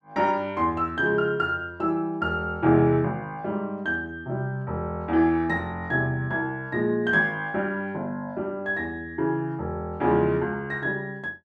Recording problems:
none

